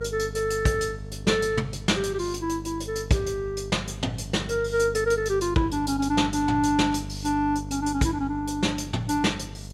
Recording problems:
hum; 50 Hz, harmonics up to 700 Hz, SNR 12 dB

